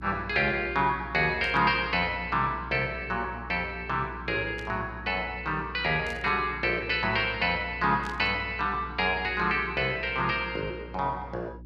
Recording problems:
electrical hum; 60 Hz, harmonics up to 360 Hz, SNR 16 dB
static burst; 4 times, first at 1.5 s; peak -11 dB vs average level

